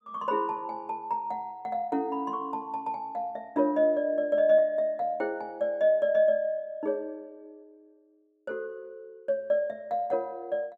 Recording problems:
none

